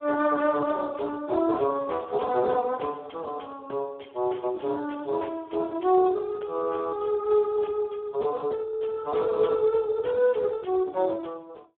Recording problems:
phone line; 300 Hz to 3.3 kHz, Speex

